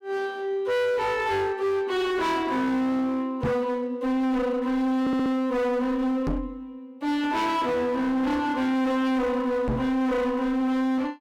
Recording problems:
distorted audio; hard clipping, signal-to-distortion ratio 7 dB
microphone bump; at 3.5 s, at 6.5 s and at 9.5 s; peak +3 dB vs average level
stutter; at 5 s

